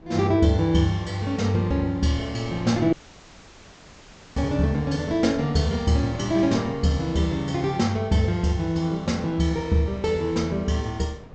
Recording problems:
low-pass filter; nothing above 8 kHz
wind noise; below 390 Hz, SNR 22 dB
dropout; at 3 s for 1.5 s

